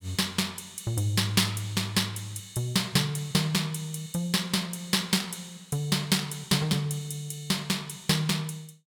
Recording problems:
none

